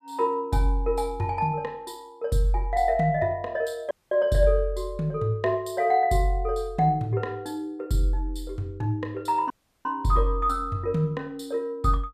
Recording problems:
audio cutting out; at 4 s and at 9.5 s

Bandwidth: 14.5 kHz